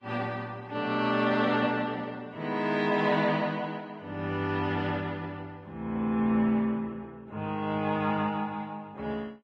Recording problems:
lossy codec; Vorbis, log-spectral distance 2 dB

